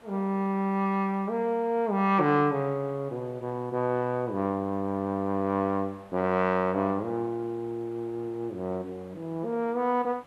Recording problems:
hiss; SNR 26 dB

